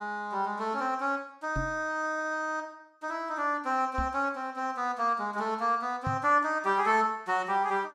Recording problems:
microphone thump; at 1.5 s, at 4 s and at 6 s; peak -1 dB vs average level

